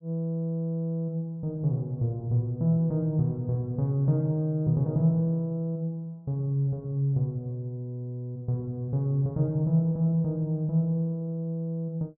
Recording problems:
none

